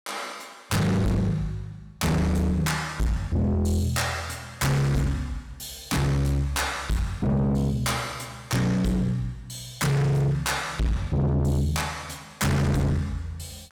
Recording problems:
distorted audio; soft clipping, signal-to-distortion ratio 6 dB

